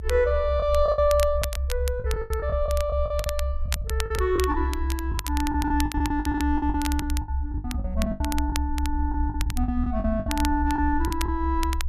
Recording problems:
rumble; below 70 Hz, strongest tone 64 Hz, SNR 3 dB
crackling; vinyl, SNR 11 dB
packet loss; 15% of the sound replaced, filled with the last packet

